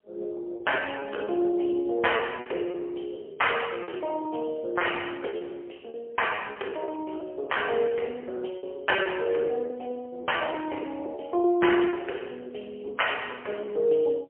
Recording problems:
telephone audio; 320 Hz to 3.2 kHz, AMR-NB, then MP3
packet loss; 11% of the sound replaced, filled with repeated pitch periods

